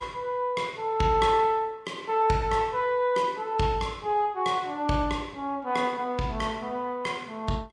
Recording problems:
lossy codec; Vorbis, log-spectral distance 2 dB, nothing above 10.4 kHz

